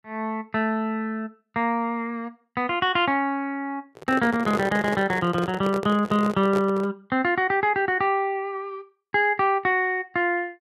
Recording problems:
microphone handling noise; from 4 to 7 s; peak -2 dB vs average level

